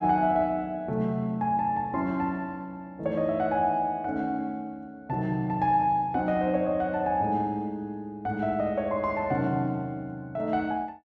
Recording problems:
none

